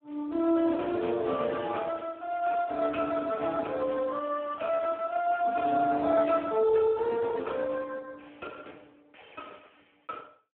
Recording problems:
telephone audio; 190 Hz to 2 kHz, Speex

